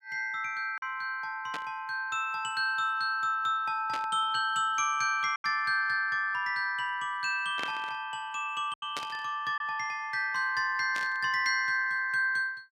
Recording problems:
packet loss; 1.7% of the sound replaced, filled with silence
burst of static; 5 times, first at 1.5 s; peak -3 dB vs average level

